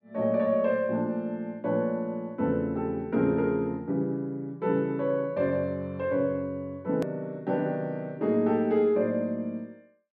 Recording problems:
edit click; at 7 s

